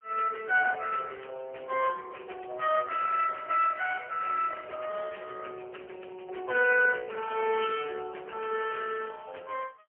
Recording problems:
phone line; 390 Hz to 3 kHz, AMR-NB, then MP3

